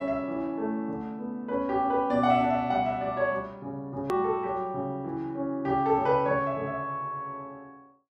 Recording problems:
hard cut with a click; at 4 s

